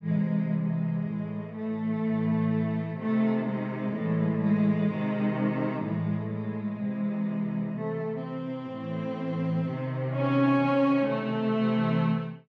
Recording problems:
none

